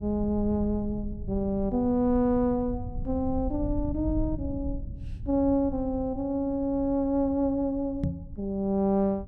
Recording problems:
rumble; below 98 Hz, SNR 11 dB
microphone bump; at 8 s; peak +2 dB vs average level

